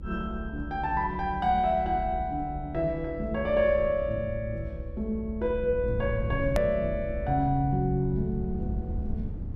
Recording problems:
rumble; below 98 Hz, SNR 9 dB
edit click; at 6.5 s

